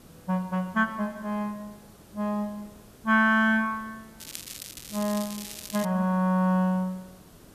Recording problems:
hiss; SNR 25 dB
crackle; from 4 to 6 s; loose cable, SNR 12 dB

